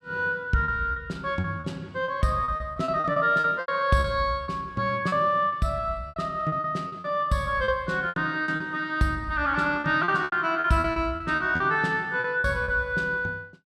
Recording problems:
packet loss; 12% of the sound replaced, filled with repeated pitch periods

